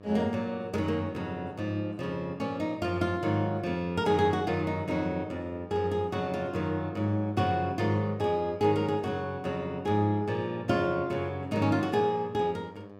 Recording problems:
electrical hum; 50 Hz, harmonics up to 1.7 kHz, SNR 19 dB

